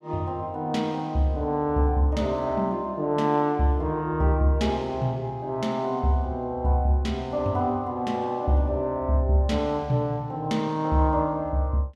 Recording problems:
none

